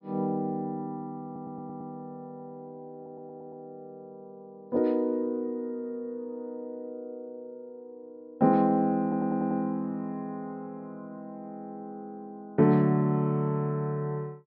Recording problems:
low-pass filter; nothing above 5.5 kHz
stutter; at 1.5 s, at 3 s and at 9 s

